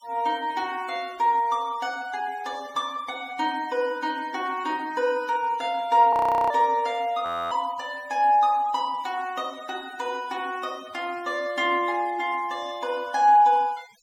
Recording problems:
denoising artefacts; signal-to-artefact ratio 24 dB
frozen audio; at 6 s and at 7.5 s

